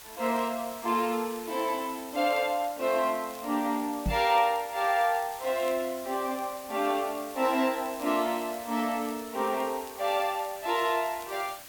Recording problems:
hiss; SNR 15 dB
crackle; vinyl, SNR 29 dB
microphone thump; at 4 s; peak +2 dB vs average level

